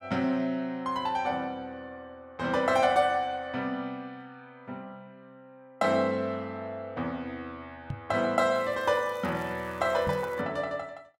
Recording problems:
microphone thump; at 8 s and at 10 s; peak -1 dB vs average level
crackling; from 8.5 to 10 s; loose cable, SNR 27 dB

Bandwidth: 16 kHz